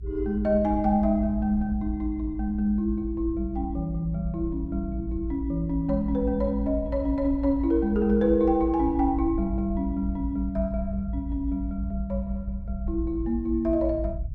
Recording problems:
low-frequency rumble; below 60 Hz, strongest tone 58 Hz, SNR 8 dB

